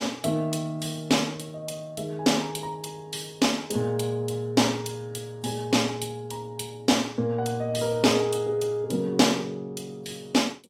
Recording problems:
lossy compression; AAC, log-spectral distance 3 dB, nothing above 14.7 kHz

